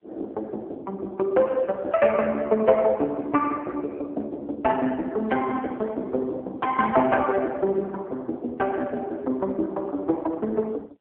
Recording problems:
phone line; 240 Hz to 2.3 kHz, AMR-NB

